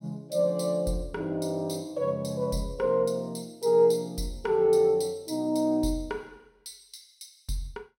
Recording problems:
none

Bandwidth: 16.5 kHz